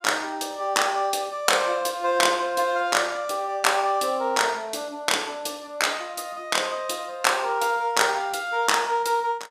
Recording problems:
none

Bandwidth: 15 kHz